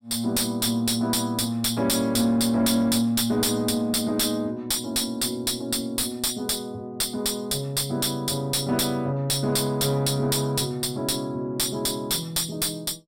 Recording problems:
distorted audio; soft clipping, signal-to-distortion ratio 6 dB

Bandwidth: 16.5 kHz